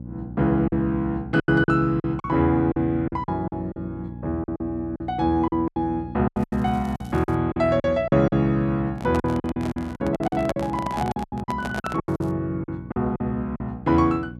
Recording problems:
hum; 60 Hz, harmonics up to 540 Hz, SNR 13 dB
lost packets; 13% of the sound replaced, filled with silence
crackling; from 6.5 to 7.5 s and at 12 s; loose cable, SNR 30 dB
handling noise; from 9 to 12 s; peak -1 dB vs average level

